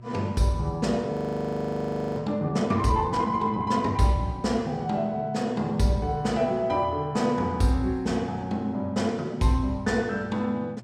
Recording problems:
hum; 60 Hz, harmonics up to 960 Hz, SNR 19 dB
audio freezing; at 1 s for 1 s

